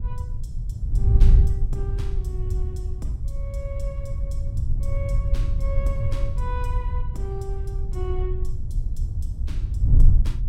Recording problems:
wind on the microphone; below 72 Hz, SNR -13 dB

